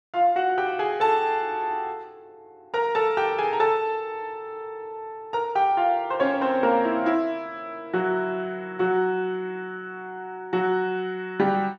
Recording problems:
none

